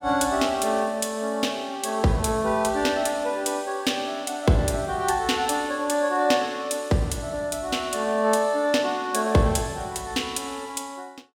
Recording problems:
none

